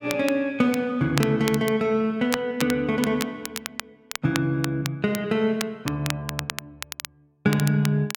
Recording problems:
crackling; vinyl, SNR 10 dB

